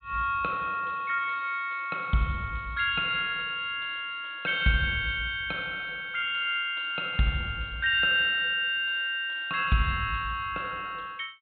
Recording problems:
treble missing; nothing above 4 kHz

